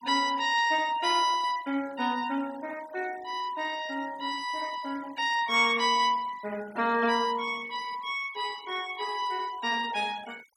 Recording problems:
noise reduction artefacts; signal-to-artefact ratio 20 dB

